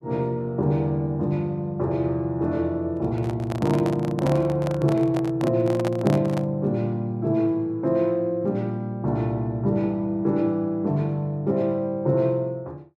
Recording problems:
handling noise; from 3 to 6.5 s; peak -2 dB vs average level

